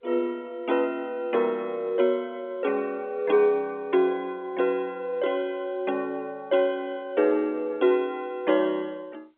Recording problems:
telephone audio; 280 Hz to 3.6 kHz, G.711

